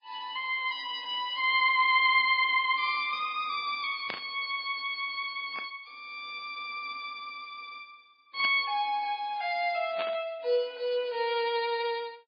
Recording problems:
lossy codec; MP3, log-spectral distance 3 dB, nothing above 4.4 kHz
burst of static; 4 times, first at 4 s; peak -4 dB vs average level

